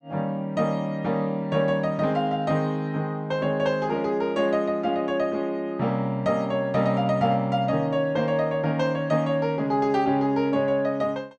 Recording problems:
none

